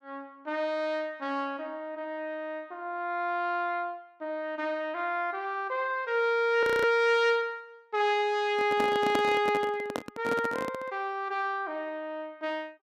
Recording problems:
audio freezing; at 6.5 s
handling noise; from 8.5 to 11 s; peak +3 dB vs average level

